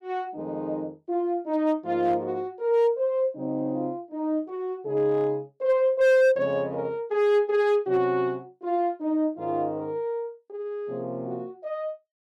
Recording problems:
distorted audio; hard clipping, signal-to-distortion ratio 12 dB

